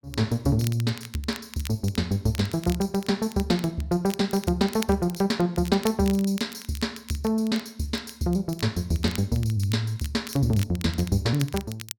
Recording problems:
crackle; vinyl, SNR 16 dB

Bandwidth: 18 kHz